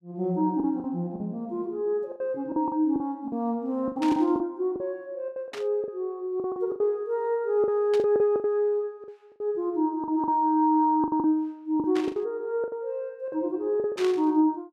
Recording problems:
lost packets; 12% of the sound replaced, filled with the last packet
burst of static; 5 times, first at 4 s; peak -6 dB vs average level

